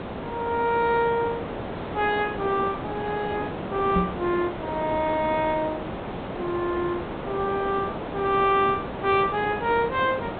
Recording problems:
treble missing; nothing above 4 kHz
background hiss; SNR 7 dB
knock on the microphone; at 4 s; peak +3 dB vs average level

